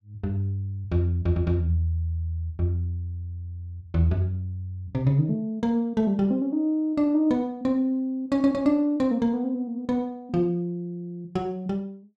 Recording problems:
none

